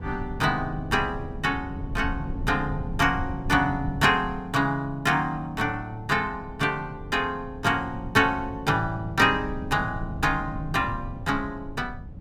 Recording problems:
rumble; below 150 Hz, SNR 11 dB

